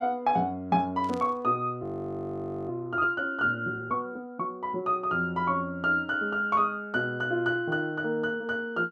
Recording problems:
burst of static; at 1 s; peak -12 dB vs average level
frozen audio; at 2 s for 1 s

